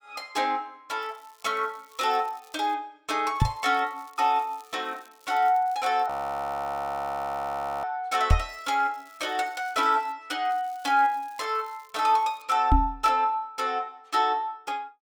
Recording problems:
crackling; 4 times, first at 1 s; loose cable, SNR 29 dB
microphone bump; at 3.5 s, at 8.5 s and at 13 s; peak +9 dB vs average level
audio freezing; at 6 s for 2 s

